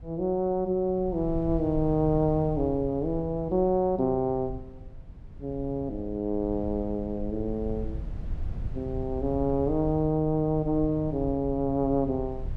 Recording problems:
rumble; below 96 Hz, SNR 12 dB

